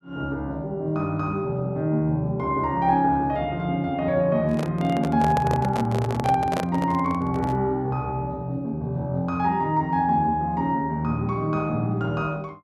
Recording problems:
handling noise; from 4.5 to 7.5 s; peak 0 dB vs average level

